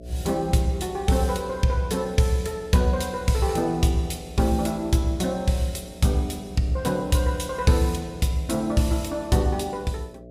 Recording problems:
hum; 60 Hz, harmonics up to 660 Hz, SNR 19 dB

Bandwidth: 15.5 kHz